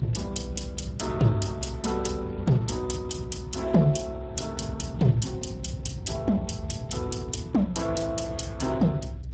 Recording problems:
codec artefacts; Speex, log-spectral distance 4 dB, nothing above 7.8 kHz
rumble; below 150 Hz, SNR 9 dB

